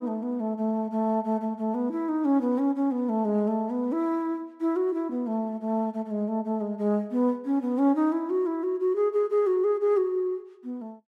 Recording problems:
none

